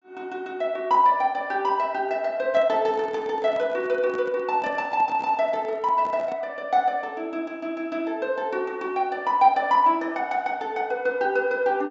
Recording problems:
low-pass filter; nothing above 8 kHz
handling noise; from 2.5 to 6.5 s; peak -9 dB vs average level

